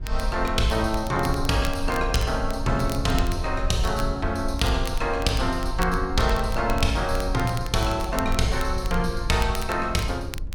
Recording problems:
low-frequency rumble; below 62 Hz, SNR 7 dB
crackle; vinyl, SNR 16 dB

